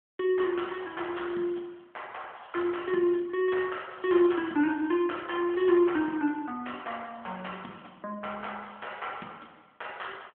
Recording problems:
telephone audio; 240 Hz to 3.3 kHz, AMR-NB

